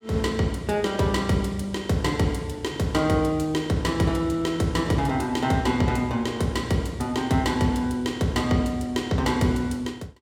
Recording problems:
none

